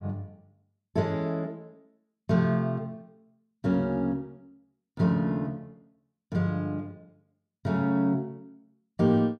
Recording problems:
none

